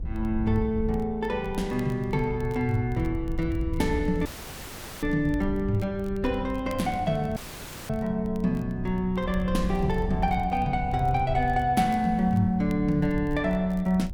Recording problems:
wind noise; below 88 Hz, SNR 10 dB
crackling; vinyl, SNR 30 dB
audio cutting out; at 4.5 s for 1 s and at 7.5 s for 0.5 s

